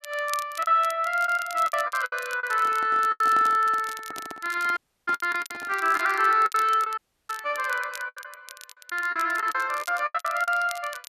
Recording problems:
crackling; vinyl, SNR 19 dB
packet loss; 12% of the sound replaced, filled with the last packet
microphone handling noise; from 2.5 to 6 s; peak -8 dB vs average level
audio cutting out; at 5 s and at 7 s

